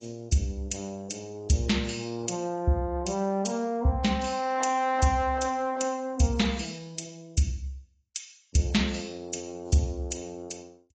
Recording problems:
codec artefacts; AAC, log-spectral distance 4 dB, nothing above 7.6 kHz

